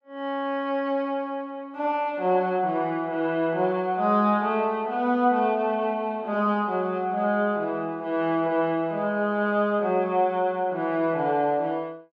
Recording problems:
none

